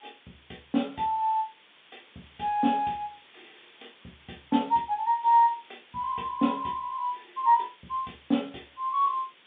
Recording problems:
phone line; 150 Hz to 3.6 kHz, G.711
hiss; SNR 27 dB

